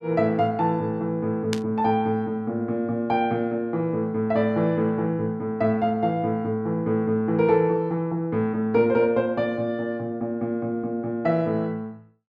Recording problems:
burst of static; at 1.5 s; peak -2 dB vs average level

